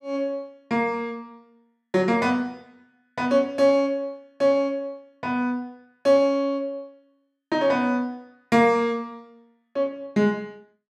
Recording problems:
none

